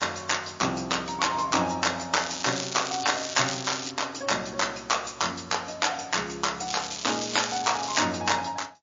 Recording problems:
codec artefacts; MP3, log-spectral distance 14 dB
crackle; from 2 to 4 s and from 6.5 to 8 s; loose cable, SNR 7 dB

